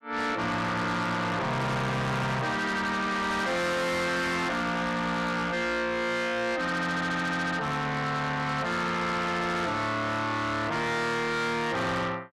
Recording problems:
distorted audio; soft clipping, signal-to-distortion ratio 6 dB

